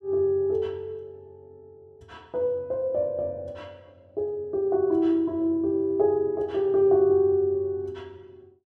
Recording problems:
none

